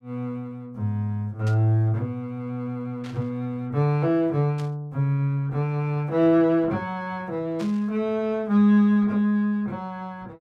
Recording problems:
static burst; 4 times, first at 1.5 s; peak -14 dB vs average level

